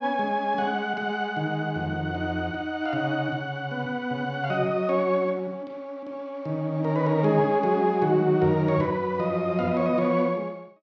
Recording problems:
none

